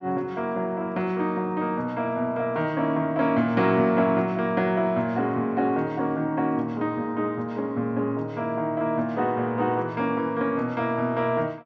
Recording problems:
treble missing; nothing above 8 kHz

